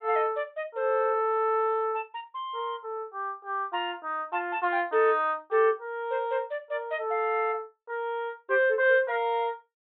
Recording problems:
treble missing; nothing above 4 kHz

